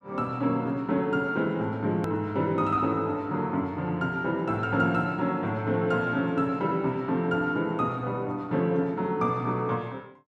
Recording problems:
edit click; at 2 s

